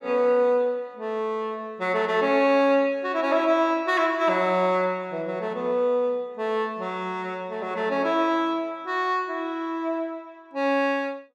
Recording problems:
none

